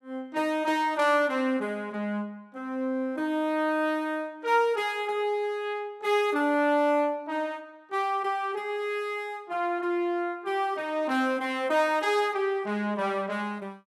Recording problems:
none

